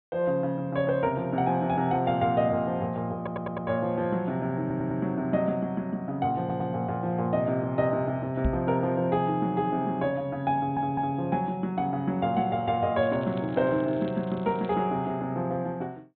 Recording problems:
treble missing; nothing above 4 kHz
audio stuttering; 4 times, first at 3 s
knock on the microphone; at 8.5 s; peak +4 dB vs average level
crackling; from 13 to 15 s; loose cable, SNR 27 dB

